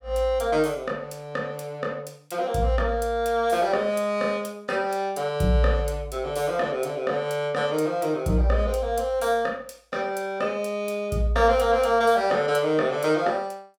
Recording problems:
none

